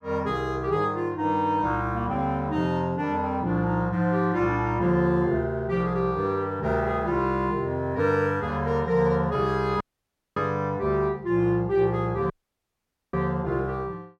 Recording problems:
audio cutting out; at 10 s for 0.5 s and at 12 s for 1 s

